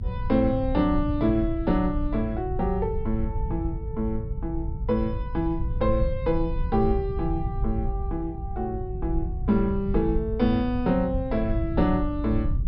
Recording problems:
treble cut off; nothing above 5.5 kHz
rumble; below 92 Hz, SNR 4 dB

